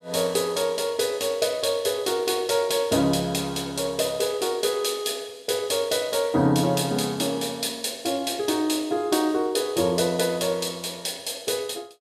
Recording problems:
none

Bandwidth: 14.5 kHz